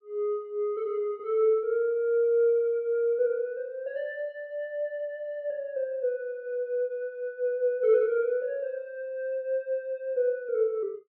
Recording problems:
none

